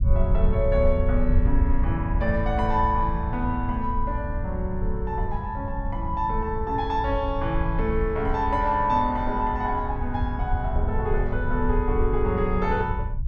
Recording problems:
rumble; below 78 Hz, SNR 2 dB

